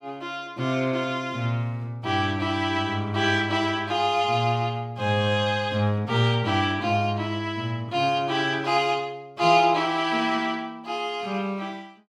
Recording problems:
none

